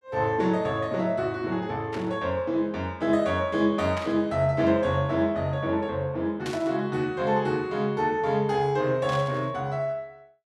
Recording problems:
static burst; 4 times, first at 2 s; peak -6 dB vs average level

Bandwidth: 12.5 kHz